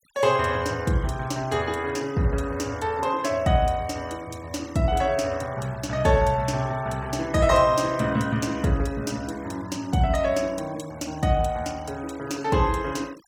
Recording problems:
denoising artefacts; signal-to-artefact ratio 22 dB

